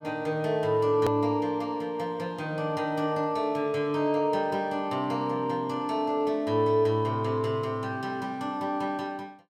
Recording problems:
edit click; at 1 s

